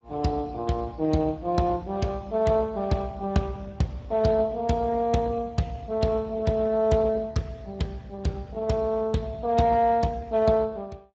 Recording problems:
lossy compression; Speex, log-spectral distance 2 dB

